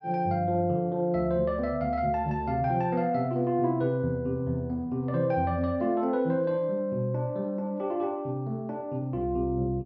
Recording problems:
none

